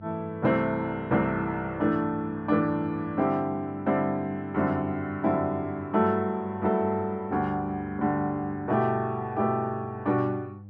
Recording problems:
hum; 50 Hz, harmonics up to 500 Hz, SNR 17 dB

